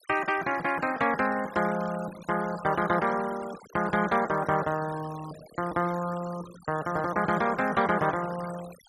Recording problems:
denoising artefacts; signal-to-artefact ratio 17 dB

